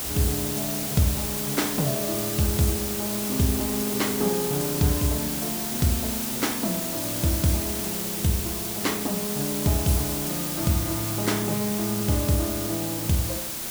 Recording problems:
hiss; slope -1 dB per octave, SNR 1 dB

